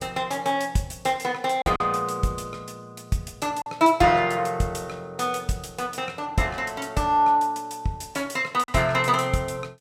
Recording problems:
packet loss; 1.6% of the sound replaced, filled with silence

